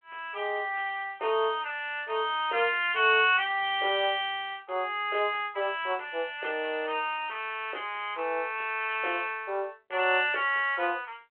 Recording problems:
telephone audio; 340 Hz to 3.3 kHz, G.726

